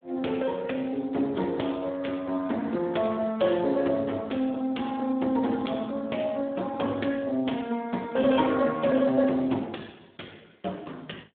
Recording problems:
telephone audio; 190 Hz to 3.5 kHz, Speex

